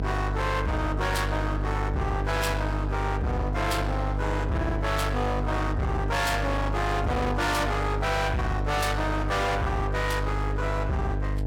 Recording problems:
distorted audio; hard clipping, signal-to-distortion ratio 6 dB
hum; 50 Hz, harmonics up to 1.3 kHz, SNR 2 dB

